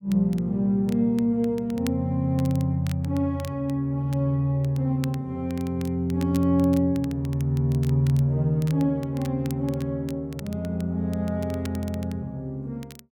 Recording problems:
crackle; vinyl, SNR 22 dB

